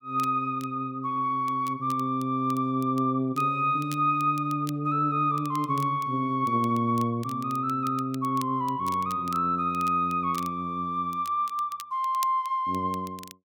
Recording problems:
crackle; vinyl, SNR 21 dB

